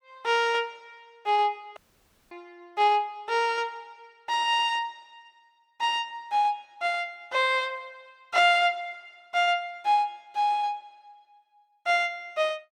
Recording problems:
audio cutting out; at 2 s for 0.5 s

